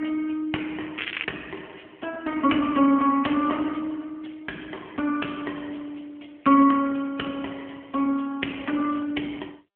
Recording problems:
telephone audio; 190 Hz to 3.2 kHz, AMR-NB
crackling; at 1 s; loose cable, SNR 8 dB

